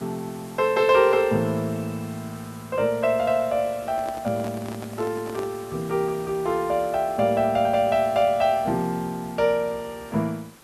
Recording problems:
background hiss; slope -3 dB per octave, SNR 21 dB
handling noise; from 4 to 5.5 s; peak -8 dB vs average level

